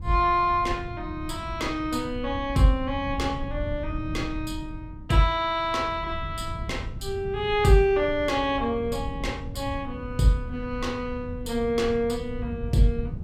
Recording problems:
wind on the microphone; below 120 Hz, SNR 11 dB

